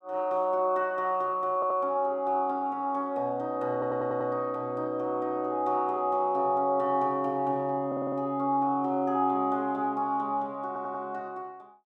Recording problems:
audio stuttering; 4 times, first at 1.5 s

